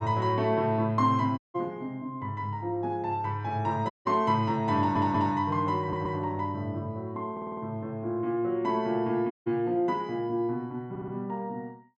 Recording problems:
dropout; at 1.5 s, at 4 s and at 9.5 s
stutter; 4 times, first at 5 s

